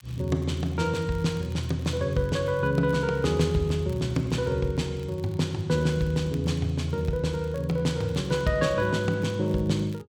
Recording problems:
crackle; vinyl, SNR 28 dB

